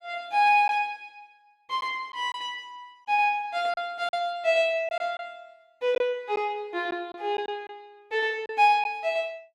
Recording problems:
lost packets; 4% of the sound replaced, filled with silence

